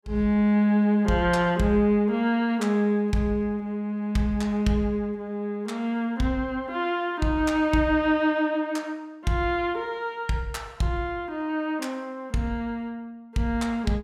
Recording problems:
none

